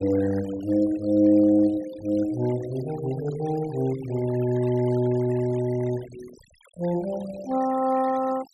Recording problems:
noise reduction artefacts; signal-to-artefact ratio 20 dB

